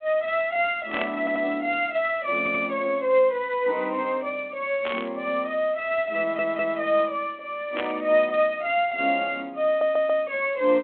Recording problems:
telephone audio; 260 Hz to 3.5 kHz, G.726
burst of static; at 1 s, at 5 s and at 8 s; peak -2 dB vs average level
audio stuttering; 4 times, first at 1 s

